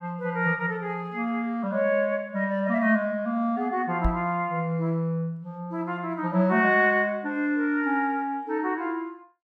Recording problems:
knock on the microphone; at 4 s; peak +3 dB vs average level

